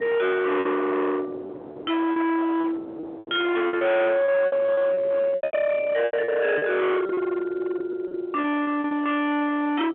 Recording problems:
phone line; 650 Hz to 3.1 kHz, G.711
distortion; hard clipping, signal-to-distortion ratio 7 dB
wind noise; below 930 Hz, SNR 18 dB
packet loss; 12% of the sound replaced, filled with repeated pitch periods

